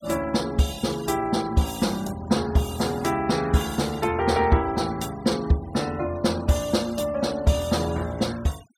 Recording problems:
noise reduction artefacts; signal-to-artefact ratio 19 dB

